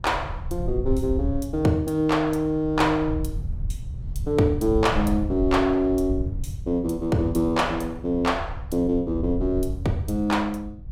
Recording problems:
wind on the microphone; below 92 Hz, SNR 9 dB

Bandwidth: 16 kHz